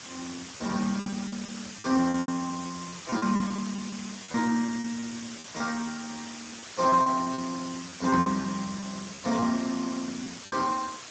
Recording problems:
lossy compression; Speex, log-spectral distance 16 dB
hiss; slope 0 dB per octave, SNR 11 dB
lost packets; 10% of the sound replaced, filled with repeated pitch periods

